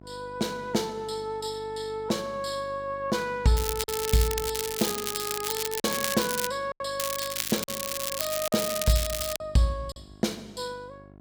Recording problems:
electrical hum; 50 Hz, harmonics up to 1.1 kHz, SNR 20 dB
packet loss; 3% of the sound replaced, filled with silence
crackle; from 3.5 to 6.5 s and from 7 to 9.5 s; loose cable, SNR 1 dB

